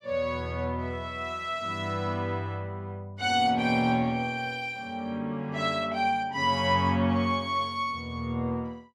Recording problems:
none

